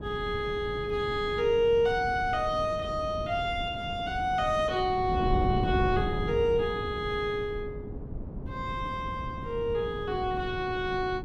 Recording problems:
wind on the microphone; below 230 Hz, SNR 8 dB

